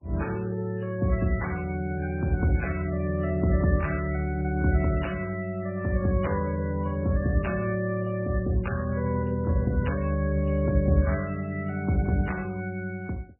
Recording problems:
codec artefacts; MP3, log-spectral distance 4 dB, nothing above 2.9 kHz

